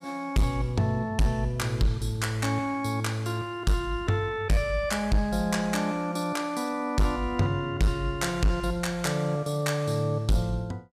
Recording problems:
distortion; hard clipping, signal-to-distortion ratio 12 dB

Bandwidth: 15 kHz